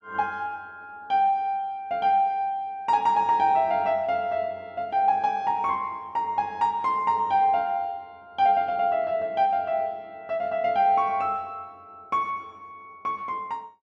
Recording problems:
none

